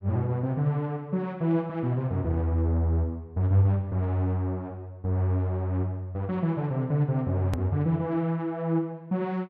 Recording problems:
edit click; at 7.5 s

